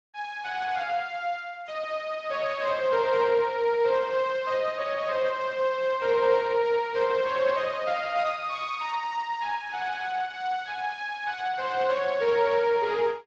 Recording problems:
lossy codec; Speex, then AAC, log-spectral distance 5 dB

